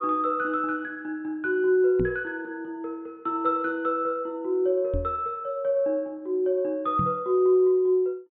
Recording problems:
treble cut off; nothing above 4 kHz
microphone thump; at 2 s, at 5 s and at 7 s; peak -1 dB vs average level

